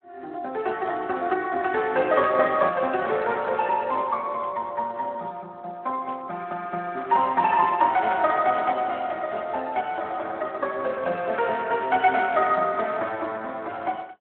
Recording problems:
telephone audio; 280 Hz to 3 kHz, Speex
burst of static; 4 times, first at 2.5 s; peak -16 dB vs average level

